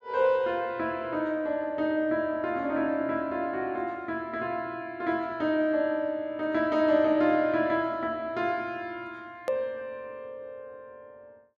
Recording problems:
hard cut with a click; at 9.5 s

